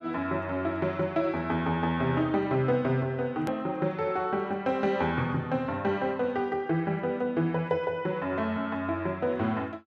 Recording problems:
edit click; at 3.5 s

